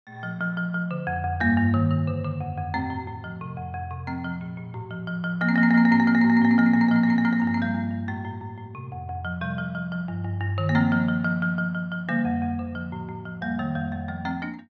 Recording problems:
none

